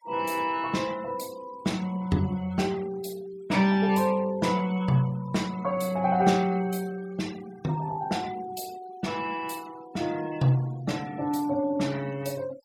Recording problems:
denoising artefacts; signal-to-artefact ratio 21 dB

